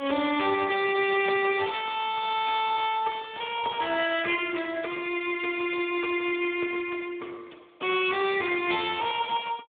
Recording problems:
phone line; 240 Hz to 3.6 kHz, Speex

